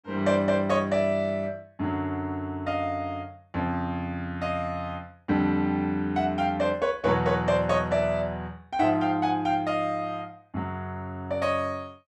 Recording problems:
none

